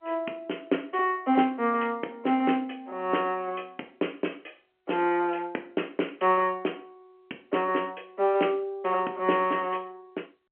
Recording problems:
telephone audio; 220 Hz to 3.2 kHz, G.711

